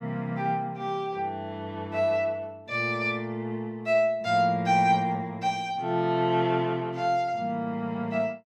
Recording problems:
none

